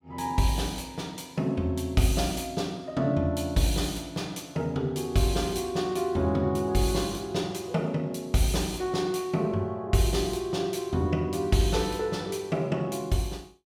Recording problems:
none

